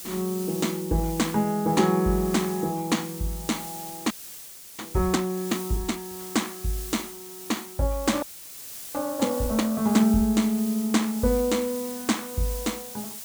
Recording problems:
background hiss; slope +1 dB per octave, SNR 11 dB
frozen audio; at 4 s for 0.5 s and at 8 s for 0.5 s

